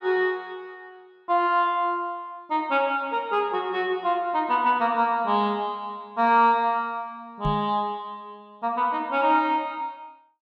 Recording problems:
knock on the microphone; at 7.5 s; peak 0 dB vs average level

